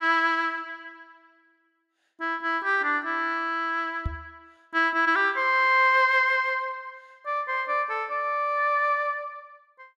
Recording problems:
knock on the microphone; at 4 s; peak -3 dB vs average level

